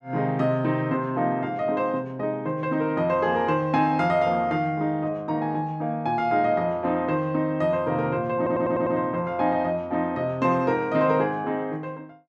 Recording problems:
audio stuttering; at 8.5 s

